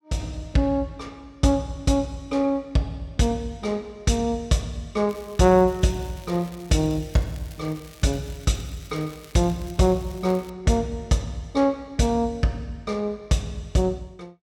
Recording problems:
crackle; from 5 to 11 s; loose cable, SNR 23 dB

